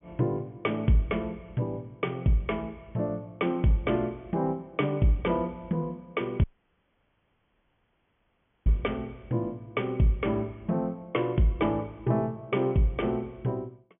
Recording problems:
treble cut off; nothing above 3.4 kHz
audio cutting out; at 6.5 s for 2 s

